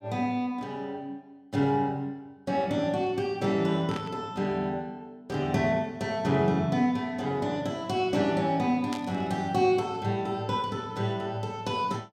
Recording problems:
static burst; at 4 s and at 9 s; peak -5 dB vs average level

